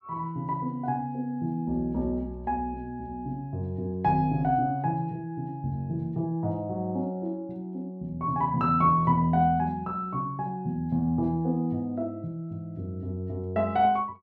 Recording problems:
none

